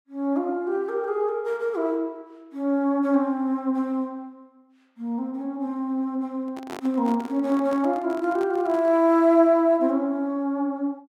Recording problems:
microphone handling noise; from 6.5 to 9 s; peak -8 dB vs average level

